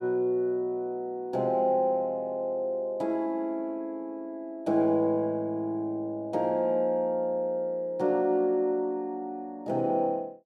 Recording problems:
none

